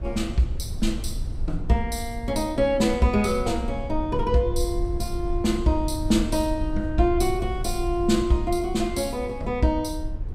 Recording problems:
low-frequency rumble; below 72 Hz, SNR 8 dB

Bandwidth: 15.5 kHz